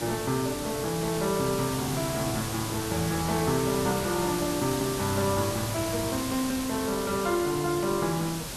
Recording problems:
hiss; slope -2 dB per octave, SNR 5 dB

